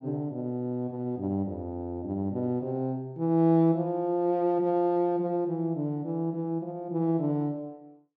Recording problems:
none

